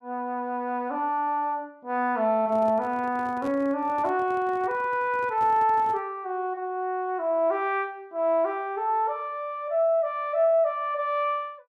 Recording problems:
microphone handling noise; from 2.5 to 6 s; peak -11 dB vs average level

